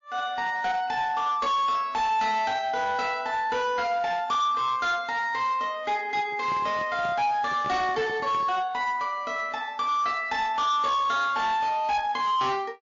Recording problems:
lossy compression; MP3, log-spectral distance 2 dB, nothing above 6.3 kHz
distorted audio; hard clipping, uneven, signal-to-distortion ratio 11 dB
handling noise; from 6 to 8.5 s; peak -8 dB vs average level

